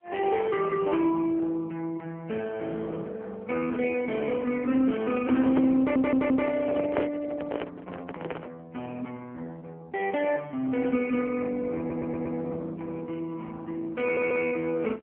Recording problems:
telephone audio; 240 Hz to 3.1 kHz, AMR-NB
microphone handling noise; from 5 to 8.5 s; peak 0 dB vs average level
stutter; at 6 s, at 12 s and at 14 s

